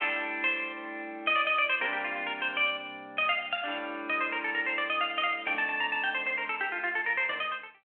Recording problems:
phone line; 300 Hz to 3.4 kHz, G.726

